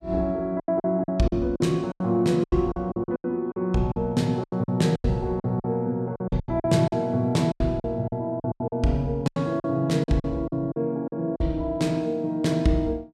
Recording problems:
lost packets; 14% of the sound replaced, filled with silence

